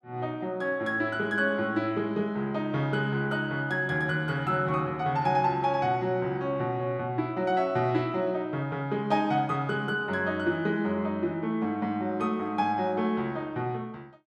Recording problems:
none

